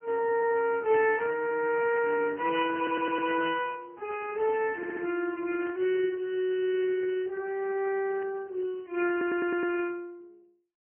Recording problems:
telephone audio; 260 Hz to 3.1 kHz, Speex
burst of static; at 2 s, at 5.5 s and at 8 s; peak -12 dB vs average level
audio stuttering; at 3 s, at 5 s and at 9 s

